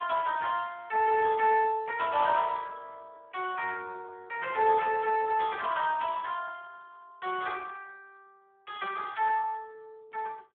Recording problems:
telephone audio; 320 Hz to 3 kHz, Speex

